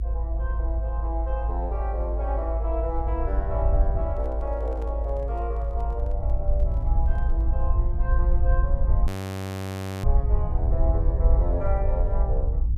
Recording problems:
low-frequency rumble; below 60 Hz, SNR -7 dB
microphone handling noise; from 4 to 7.5 s; peak -11 dB vs average level
frozen audio; at 9 s for 1 s

